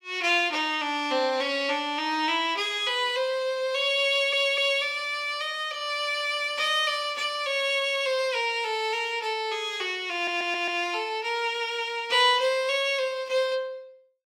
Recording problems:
audio stuttering; at 4 s and at 10 s

